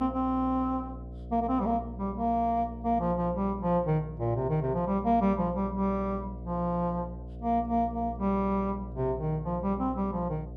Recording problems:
hum; 60 Hz, harmonics up to 720 Hz, SNR 12 dB

